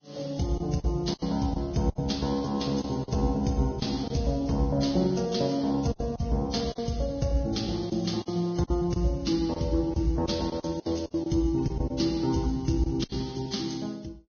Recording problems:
lossy compression; Vorbis, log-spectral distance 4 dB, nothing above 6.5 kHz
packet loss; 8% of the sound replaced, filled with silence

